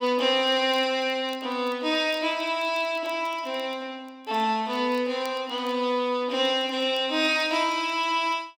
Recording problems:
crackle; vinyl, SNR 30 dB

